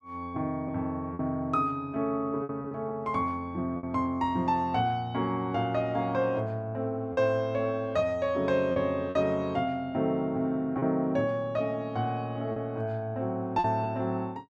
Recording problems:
lost packets; 4% of the sound replaced, filled with repeated pitch periods

